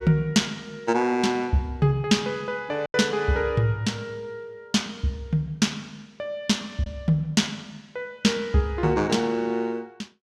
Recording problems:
lost packets; 1% of the sound replaced, filled with silence

